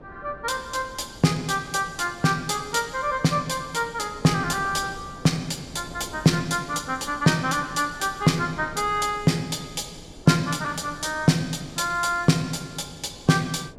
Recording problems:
wind on the microphone; below 450 Hz, SNR 20 dB

